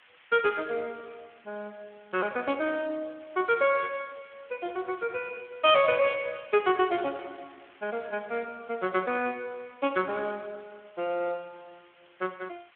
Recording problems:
phone line; 260 Hz to 3.3 kHz, Speex
hiss; SNR 28 dB

